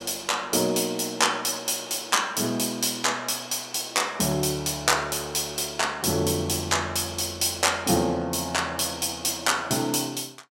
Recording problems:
none

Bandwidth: 16.5 kHz